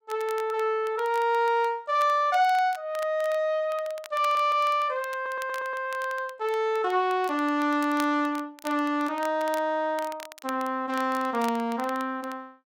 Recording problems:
crackle; vinyl, SNR 20 dB
stutter; at 4 s and at 5 s

